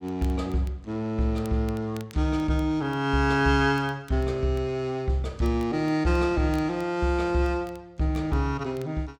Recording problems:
crackling; vinyl, SNR 28 dB

